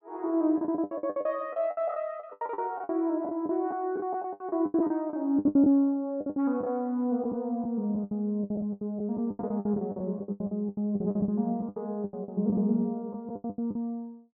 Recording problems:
packet loss; 19% of the sound replaced, filled with the last packet

